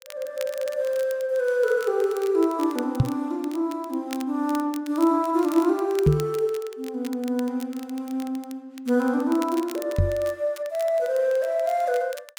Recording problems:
crackle; vinyl, SNR 19 dB
knock on the microphone; at 3 s, at 6 s and at 10 s; peak +9 dB vs average level

